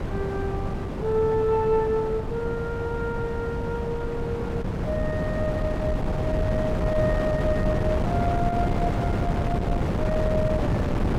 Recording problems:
wind on the microphone; below 380 Hz, SNR -1 dB

